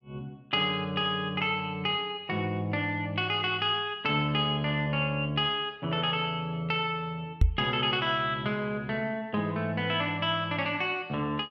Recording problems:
knock on the microphone; at 7.5 s; peak +9 dB vs average level

